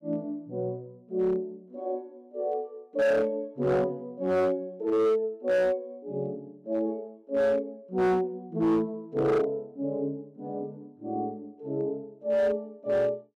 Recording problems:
distortion; hard clipping, signal-to-distortion ratio 11 dB

